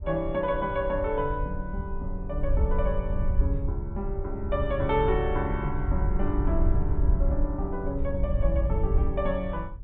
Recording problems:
treble cut off; nothing above 4 kHz
wind on the microphone; below 70 Hz, SNR 0 dB

